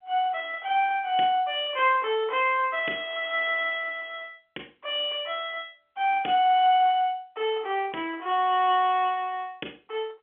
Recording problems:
phone line; 260 Hz to 3.4 kHz, G.711

